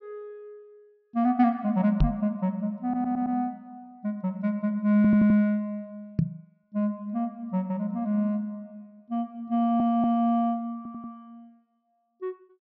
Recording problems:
low-pass filter; nothing above 5.8 kHz
microphone thump; at 2 s and at 6 s; peak +6 dB vs average level
stutter; 4 times, first at 3 s

